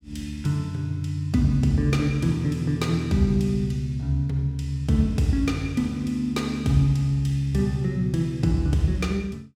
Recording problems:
none

